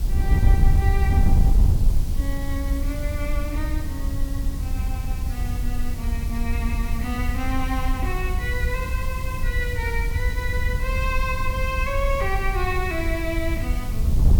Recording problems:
background hiss; slope +1 dB per octave, SNR 12 dB
wind noise; below 78 Hz, SNR -5 dB

